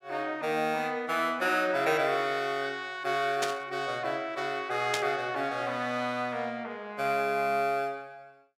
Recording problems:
burst of static; at 3.5 s and at 5 s; peak +4 dB vs average level

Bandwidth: 17 kHz